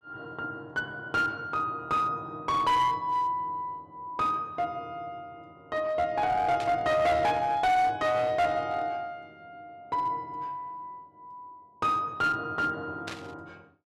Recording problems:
distortion; hard clipping, uneven, signal-to-distortion ratio 11 dB
burst of static; at 6.5 s and at 13 s; peak -5 dB vs average level

